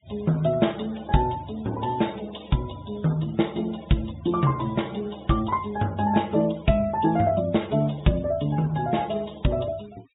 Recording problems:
treble missing; nothing above 4 kHz
noise reduction artefacts; signal-to-artefact ratio 22 dB

